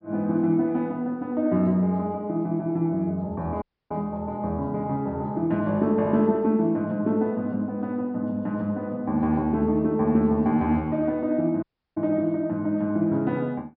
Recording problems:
treble missing; nothing above 5.5 kHz
audio cutting out; at 3.5 s and at 12 s

